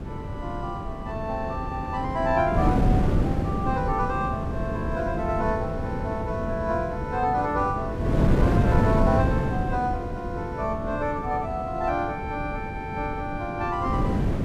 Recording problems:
wind noise; below 280 Hz, SNR 0 dB

